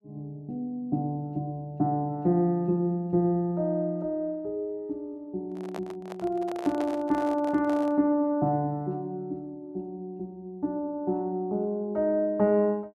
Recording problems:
handling noise; from 5.5 to 8 s; peak -5 dB vs average level

